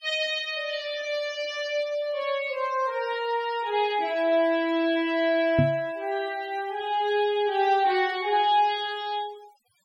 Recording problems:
noise reduction artefacts; signal-to-artefact ratio 21 dB
microphone thump; at 5.5 s; peak +6 dB vs average level

